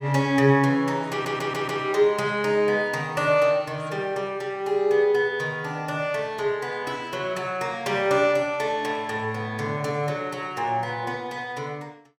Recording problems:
stutter; at 1 s

